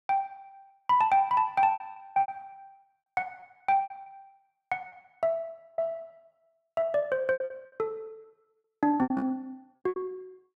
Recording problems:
lost packets; 16% of the sound replaced, filled with repeated pitch periods

